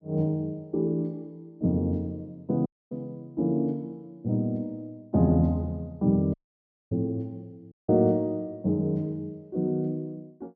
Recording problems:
audio cutting out; at 2.5 s, at 6.5 s for 0.5 s and at 7.5 s

